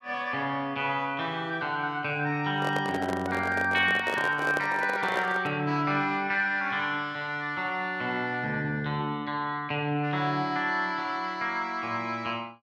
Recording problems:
handling noise; from 2.5 to 5.5 s; peak 0 dB vs average level

